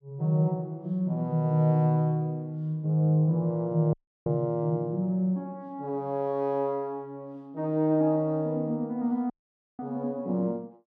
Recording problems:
dropout; at 4 s and at 9.5 s

